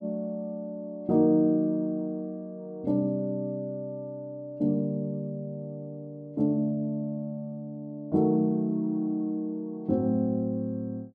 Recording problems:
none

